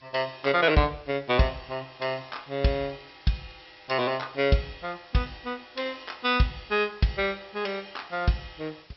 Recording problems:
treble cut off; nothing above 5.6 kHz
background hiss; slope 0 dB per octave, SNR 27 dB
crackle; from 2 to 4.5 s; loose cable, SNR 29 dB

